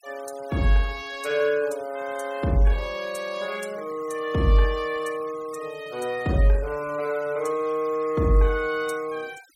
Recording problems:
noise reduction artefacts; signal-to-artefact ratio 22 dB

